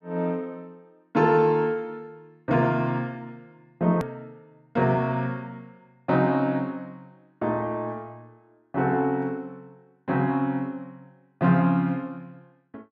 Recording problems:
click at an edit; at 4 s

